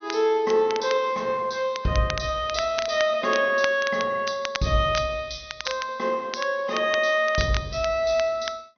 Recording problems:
treble cut off; nothing above 6.3 kHz
crackling; vinyl, SNR 12 dB

